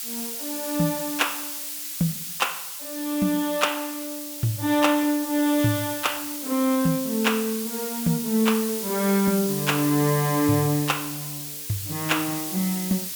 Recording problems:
background hiss; slope +6 dB per octave, SNR 6 dB

